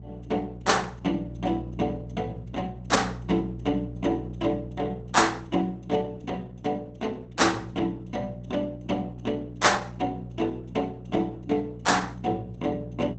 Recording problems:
lossy codec; Opus, log-spectral distance 3 dB, nothing above 8 kHz
hum; 60 Hz, harmonics up to 600 Hz, SNR 11 dB

